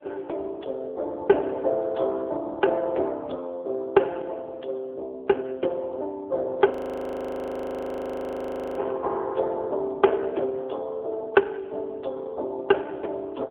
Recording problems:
telephone audio; 300 Hz to 2.2 kHz, AMR-NB
frozen audio; at 6.5 s for 2 s

